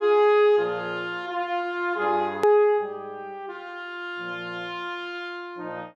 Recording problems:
click at an edit; at 2.5 s

